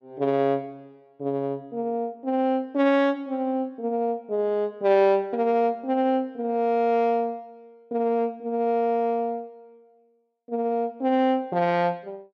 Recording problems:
none

